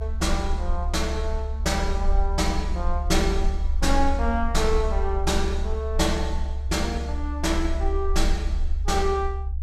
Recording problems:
rumble; below 68 Hz, SNR 1 dB

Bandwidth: 16.5 kHz